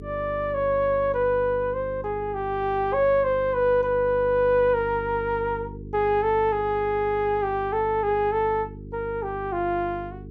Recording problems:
hum; 50 Hz, harmonics up to 450 Hz, SNR 15 dB

